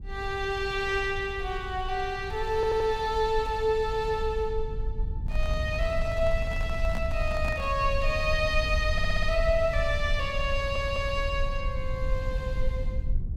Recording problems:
rumble; below 70 Hz, SNR 5 dB
audio stuttering; at 2.5 s, at 9 s and at 11 s
microphone handling noise; from 5 to 8 s; peak -5 dB vs average level

